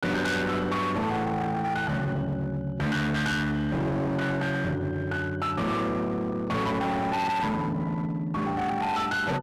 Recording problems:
distorted audio; hard clipping, signal-to-distortion ratio 6 dB

